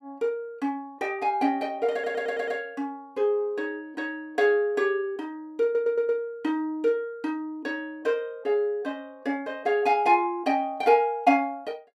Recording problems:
audio stuttering; at 2 s and at 5.5 s

